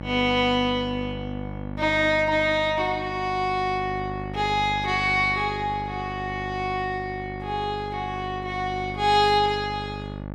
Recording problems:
hum; 50 Hz, harmonics up to 1.8 kHz, SNR 11 dB

